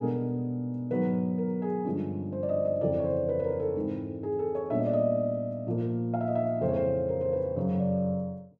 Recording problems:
none

